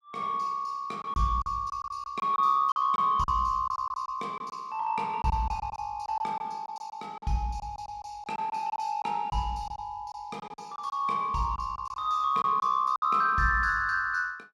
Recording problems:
packet loss; 9% of the sound replaced, filled with silence

